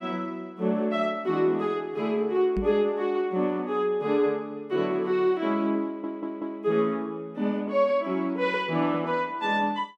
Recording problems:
microphone thump; at 2.5 s; peak 0 dB vs average level
stutter; at 6 s

